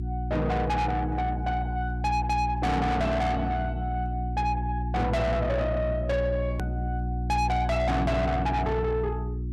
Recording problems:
distorted audio; soft clipping, signal-to-distortion ratio 7 dB
electrical hum; 60 Hz, harmonics up to 360 Hz, SNR 3 dB
hard cut with a click; at 6.5 s

